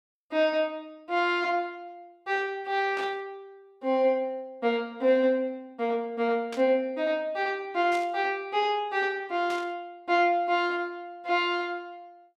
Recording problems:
static burst; 4 times, first at 3 s; peak -9 dB vs average level

